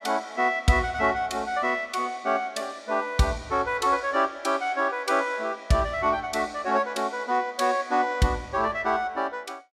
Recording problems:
none

